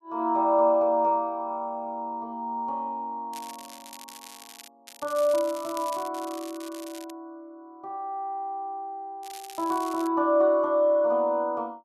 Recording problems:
crackling; from 3.5 to 4.5 s, from 5 to 7 s and at 9 s; loose cable, SNR 18 dB

